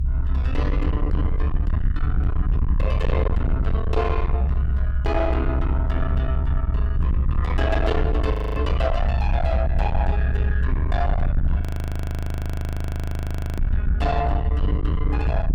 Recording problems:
distortion; soft clipping, signal-to-distortion ratio 7 dB
low-frequency rumble; below 78 Hz, SNR -4 dB
frozen audio; at 8.5 s and at 12 s for 2 s

